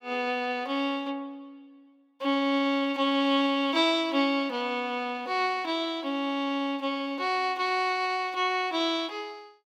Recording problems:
none

